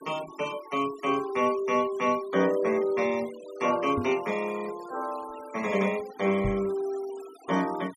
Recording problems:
denoising artefacts; signal-to-artefact ratio 18 dB
microphone thump; at 4 s and at 6.5 s; peak 0 dB vs average level

